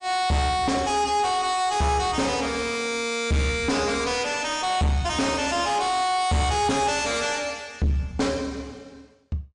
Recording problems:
lossy codec; MP3, log-spectral distance 3 dB, nothing above 8.2 kHz
distortion; soft clipping, signal-to-distortion ratio 7 dB

